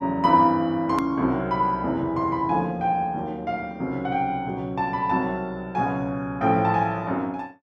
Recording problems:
click at an edit; at 1 s

